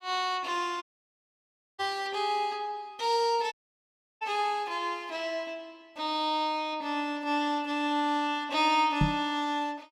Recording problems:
dropout; at 1 s for 1 s and at 3.5 s for 0.5 s
microphone thump; at 2 s and at 9 s; peak +7 dB vs average level

